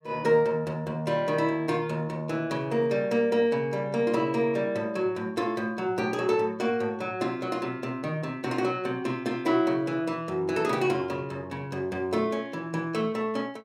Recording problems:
none

